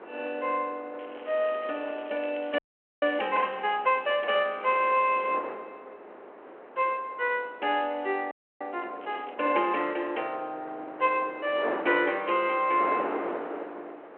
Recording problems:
telephone audio; 320 Hz to 3.2 kHz, G.726
wind noise; below 1 kHz, SNR 12 dB
crackle; from 1 to 5.5 s and at 9 s; loose cable, SNR 24 dB
frozen audio; at 2.5 s and at 8.5 s

